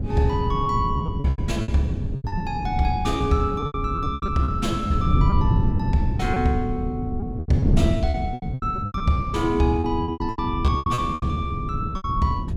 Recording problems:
wind on the microphone; below 160 Hz, SNR 2 dB
packet loss; 15% of the sound replaced, filled with repeated pitch periods

